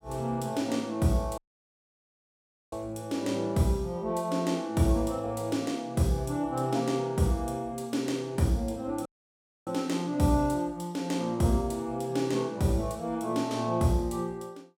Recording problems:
audio cutting out; at 1.5 s for 1.5 s and at 9 s for 0.5 s

